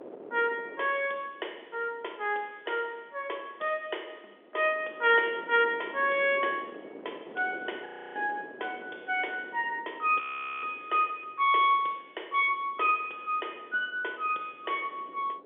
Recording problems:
telephone audio; 320 Hz to 3.5 kHz, G.711
wind noise; below 570 Hz, SNR 19 dB
audio freezing; at 8 s and at 10 s

